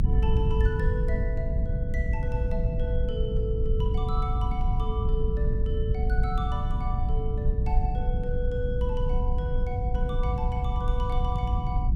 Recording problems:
hum; 50 Hz, harmonics up to 450 Hz, SNR 16 dB
rumble; below 88 Hz, SNR -6 dB

